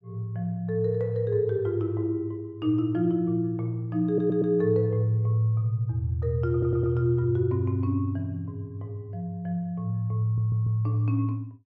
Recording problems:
stutter; at 4 s, at 6.5 s and at 10 s

